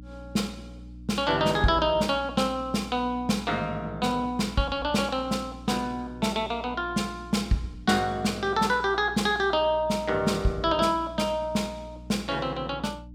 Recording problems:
electrical hum; 60 Hz, harmonics up to 300 Hz, SNR 18 dB

